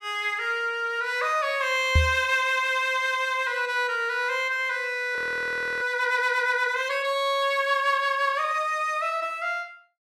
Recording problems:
microphone thump; at 2 s; peak +6 dB vs average level
frozen audio; at 5 s for 0.5 s

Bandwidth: 15 kHz